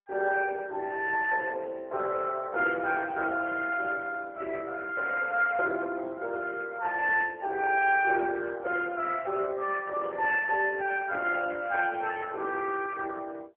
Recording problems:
phone line; 320 Hz to 2.8 kHz, AMR-NB

